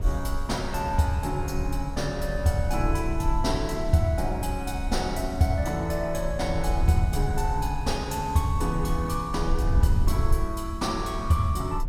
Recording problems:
rumble; below 72 Hz, SNR 4 dB

